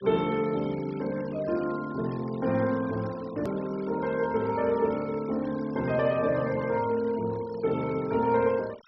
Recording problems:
treble cut off; nothing above 5.6 kHz
denoising artefacts; signal-to-artefact ratio 20 dB
hard cut with a click; at 3.5 s

